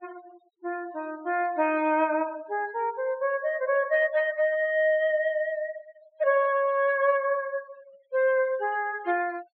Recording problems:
treble missing; nothing above 4.3 kHz
noise reduction artefacts; signal-to-artefact ratio 25 dB

